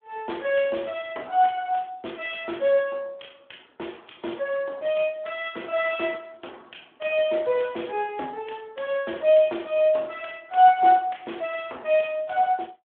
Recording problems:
phone line; 260 Hz to 3.5 kHz, Speex

